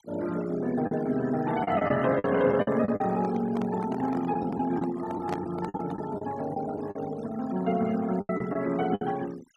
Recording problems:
denoising artefacts; signal-to-artefact ratio 18 dB
lost packets; 8% of the sound replaced, filled with the last packet
microphone handling noise; from 2.5 to 6 s; peak -1 dB vs average level

